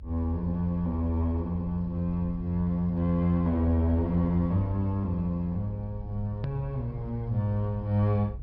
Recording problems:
low-pass filter; nothing above 5.5 kHz
rumble; below 78 Hz, SNR 14 dB
edit click; at 6.5 s

